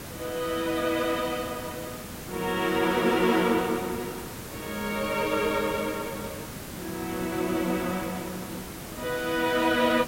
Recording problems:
hiss; slope -4 dB per octave, SNR 10 dB

